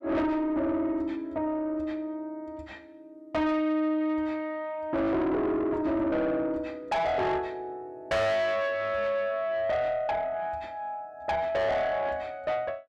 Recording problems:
distorted audio; soft clipping, signal-to-distortion ratio 6 dB

